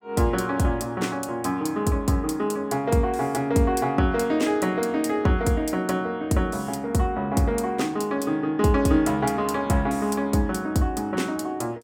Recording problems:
none

